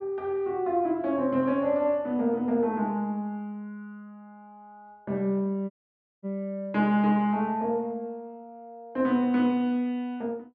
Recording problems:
dropout; at 5.5 s for 0.5 s

